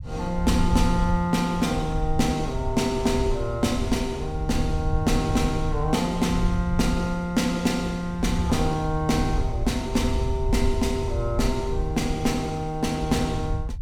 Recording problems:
low-frequency rumble; below 86 Hz, SNR 5 dB

